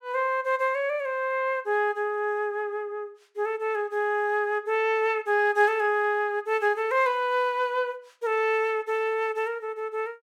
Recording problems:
none

